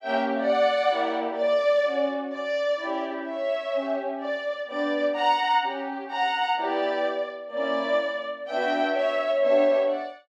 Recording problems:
none

